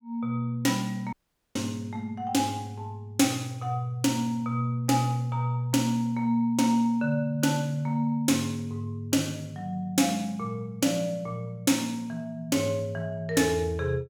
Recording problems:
dropout; at 1 s

